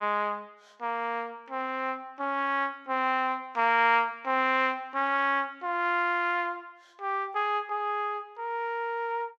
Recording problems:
none

